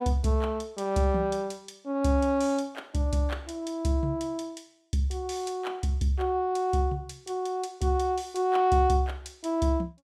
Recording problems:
none

